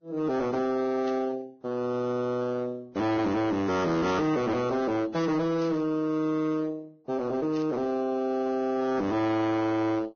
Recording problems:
lossy compression; Vorbis, log-spectral distance 2 dB, nothing above 6.5 kHz
distortion; hard clipping, signal-to-distortion ratio 7 dB
burst of static; 4 times, first at 1 s; peak -12 dB vs average level

